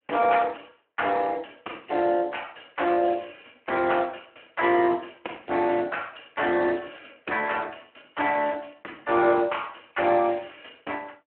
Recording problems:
phone line; 260 Hz to 3.1 kHz, Speex

